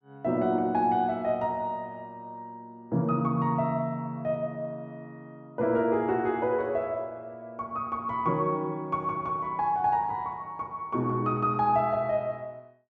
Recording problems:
none

